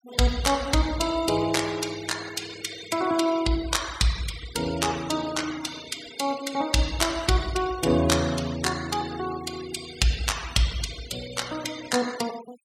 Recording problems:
denoising artefacts; signal-to-artefact ratio 14 dB

